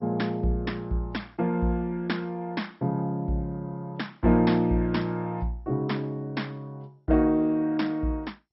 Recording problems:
lossy compression; MP2, log-spectral distance 2 dB, nothing above 5.5 kHz

